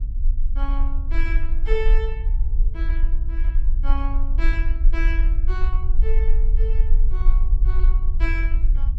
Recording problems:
low-frequency rumble; below 42 Hz, strongest tone 26 Hz, SNR -11 dB

